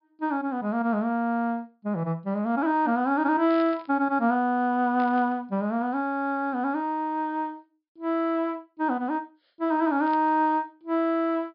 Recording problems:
treble missing; nothing above 5.5 kHz
static burst; at 3.5 s, at 5 s and at 10 s; peak -13 dB vs average level

